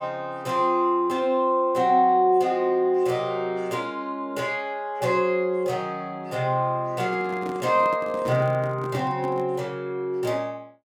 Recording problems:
microphone handling noise; from 7 to 9.5 s; peak -6 dB vs average level

